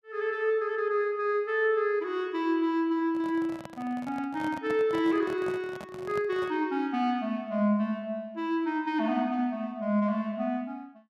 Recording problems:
microphone handling noise; from 3 to 6.5 s; peak -7 dB vs average level

